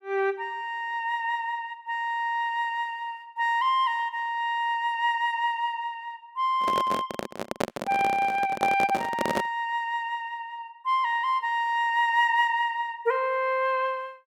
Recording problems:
microphone handling noise; from 6.5 to 9.5 s; peak +2 dB vs average level

